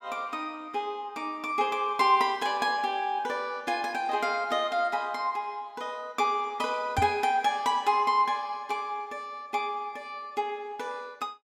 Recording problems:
knock on the microphone; at 7 s; peak +1 dB vs average level

